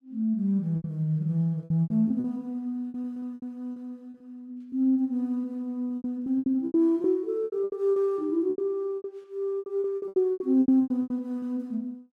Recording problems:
lost packets; 16% of the sound replaced, filled with repeated pitch periods

